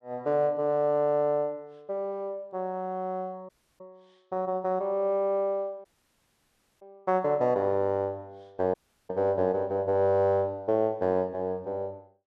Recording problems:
dropout; at 3.5 s, at 6 s for 1 s and at 8.5 s

